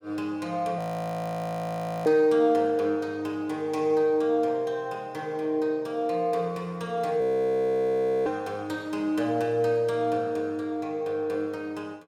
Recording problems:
audio freezing; at 1 s for 1.5 s and at 7 s for 1 s

